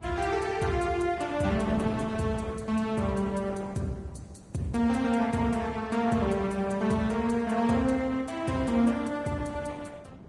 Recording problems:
lossy compression; Opus, then Vorbis, log-spectral distance 3 dB, nothing above 10.1 kHz
wind on the microphone; below 320 Hz, SNR 16 dB

